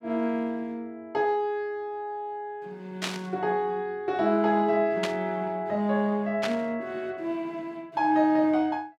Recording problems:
static burst; at 3 s, at 5 s and at 6.5 s; peak +2 dB vs average level

